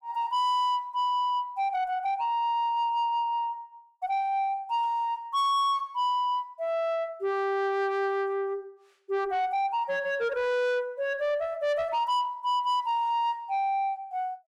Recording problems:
distortion; soft clipping, signal-to-distortion ratio 11 dB

